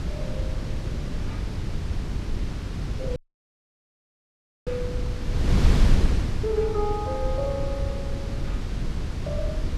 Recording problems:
wind noise; below 130 Hz, SNR -4 dB
dropout; at 3 s for 1.5 s

